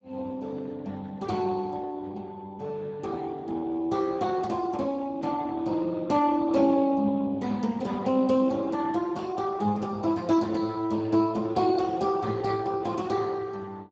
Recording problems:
lossy codec; Speex, log-spectral distance 3 dB

